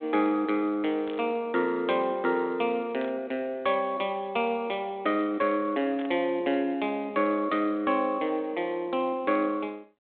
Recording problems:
telephone audio; 190 Hz to 3.7 kHz, G.726
static burst; 4 times, first at 1 s; peak -12 dB vs average level

